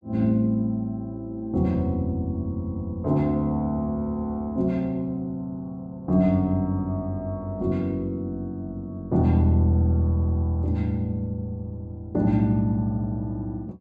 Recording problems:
none

